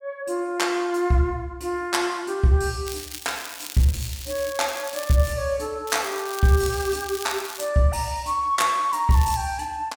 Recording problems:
crackling; from 3 to 5.5 s, from 6 to 7.5 s and at 9 s; loose cable, SNR 12 dB

